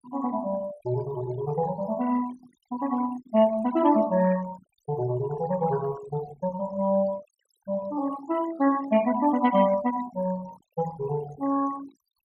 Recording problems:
denoising artefacts; signal-to-artefact ratio 18 dB

